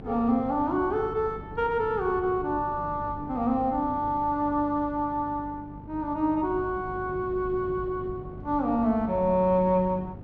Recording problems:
electrical hum; 50 Hz, harmonics up to 800 Hz, SNR 19 dB
wind on the microphone; below 300 Hz, SNR 17 dB

